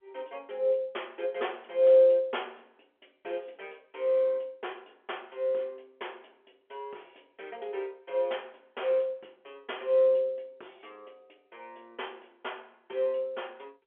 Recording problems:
phone line; 300 Hz to 3.5 kHz, G.711

